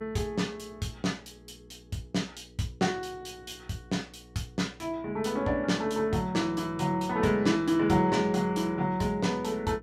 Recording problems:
electrical hum; 60 Hz, harmonics up to 480 Hz, SNR 24 dB

